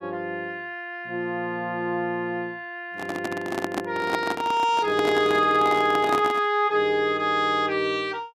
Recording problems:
handling noise; from 3 to 6.5 s; peak +1 dB vs average level

